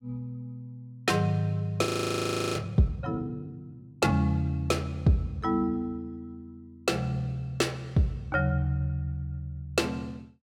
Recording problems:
frozen audio; at 2 s for 0.5 s

